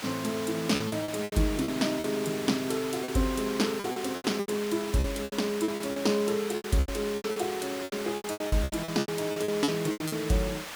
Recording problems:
hiss; SNR 8 dB
packet loss; 17% of the sound replaced, filled with repeated pitch periods

